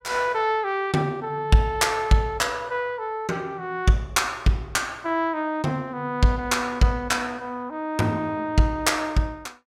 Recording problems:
none

